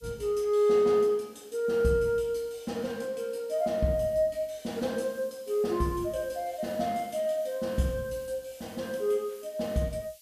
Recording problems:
background hiss; SNR 25 dB

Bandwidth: 14.5 kHz